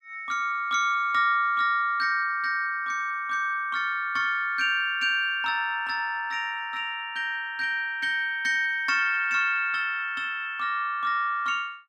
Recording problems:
none

